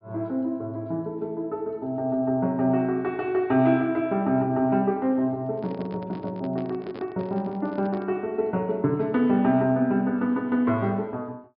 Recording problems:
low-pass filter; nothing above 5.5 kHz
handling noise; from 5.5 to 8 s; peak -10 dB vs average level

